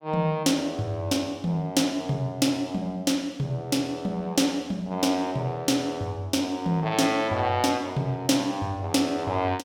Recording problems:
none

